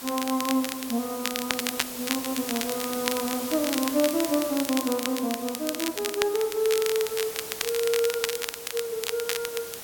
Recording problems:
hiss; slope -2 dB per octave, SNR 7 dB
crackle; vinyl, SNR 4 dB

